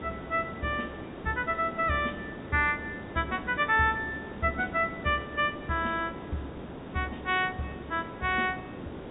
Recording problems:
treble missing; nothing above 4 kHz
hiss; SNR 11 dB

